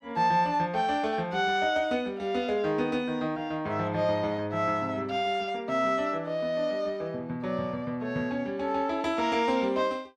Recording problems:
none

